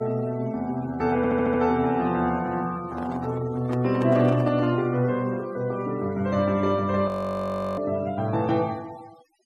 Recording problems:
noise reduction artefacts; signal-to-artefact ratio 24 dB
audio stuttering; at 1 s
handling noise; from 3 to 5 s; peak -7 dB vs average level
audio freezing; at 7 s for 0.5 s

